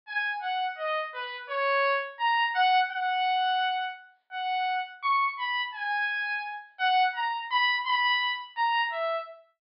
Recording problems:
treble cut off; nothing above 5.5 kHz

